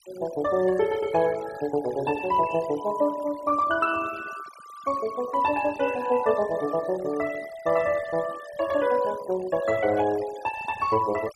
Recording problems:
denoising artefacts; signal-to-artefact ratio 17 dB

